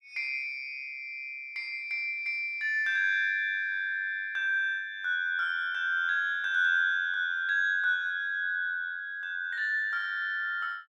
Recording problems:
none

